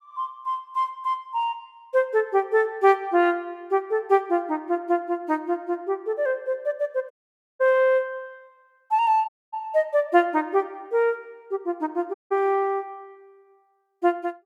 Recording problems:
audio cutting out; at 7 s, at 9.5 s and at 12 s

